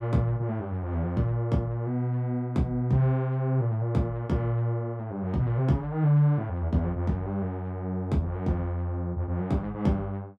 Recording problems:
none

